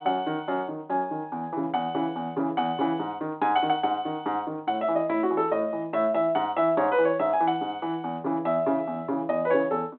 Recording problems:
telephone audio; 220 Hz to 3.7 kHz, G.726

